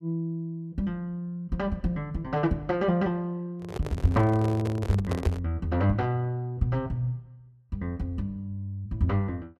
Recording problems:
microphone handling noise; from 3.5 to 5.5 s; peak +3 dB vs average level

